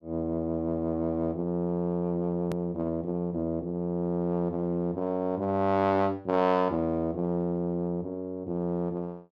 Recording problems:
hard cut with a click; at 2.5 s

